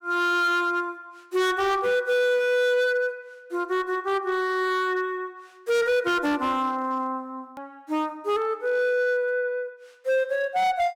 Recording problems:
distorted audio; hard clipping, signal-to-distortion ratio 10 dB
click at an edit; at 7.5 s

